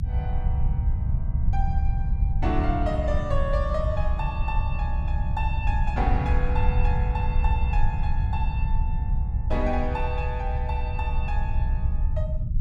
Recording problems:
rumble; below 82 Hz, SNR -5 dB

